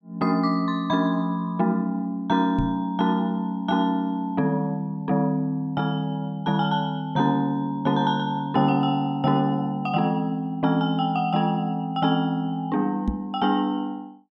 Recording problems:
microphone bump; at 2.5 s and at 13 s; peak +2 dB vs average level

